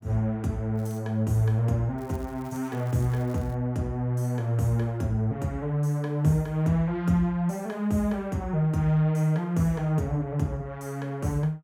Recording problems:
crackle; at 1 s and from 2 to 3.5 s; loose cable, SNR 28 dB

